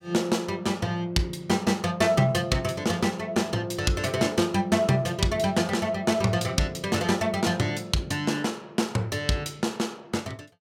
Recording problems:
none

